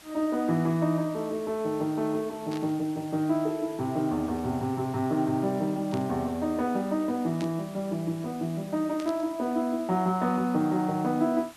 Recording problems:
hiss; slope -1 dB per octave, SNR 21 dB
burst of static; 4 times, first at 2.5 s; peak -9 dB vs average level

